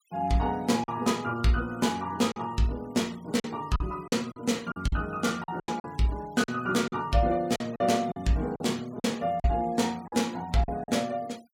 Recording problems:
denoising artefacts; signal-to-artefact ratio 24 dB
lost packets; 8% of the sound replaced, filled with silence

